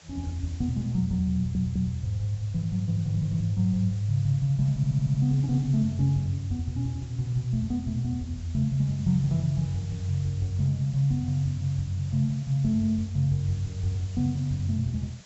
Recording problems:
treble cut off; nothing above 7.7 kHz
background hiss; slope -1 dB per octave, SNR 24 dB
audio stuttering; at 1.5 s and at 5 s

